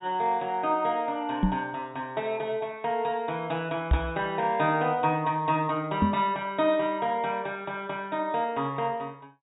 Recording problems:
low-pass filter; nothing above 4 kHz
microphone bump; at 1.5 s, at 4 s and at 6 s; peak +8 dB vs average level

